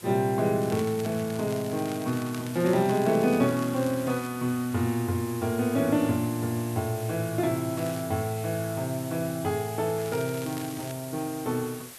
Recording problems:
hiss; slope -1 dB per octave, SNR 15 dB
crackling; from 0.5 to 4.5 s, at 8 s and at 10 s; loose cable, SNR 17 dB

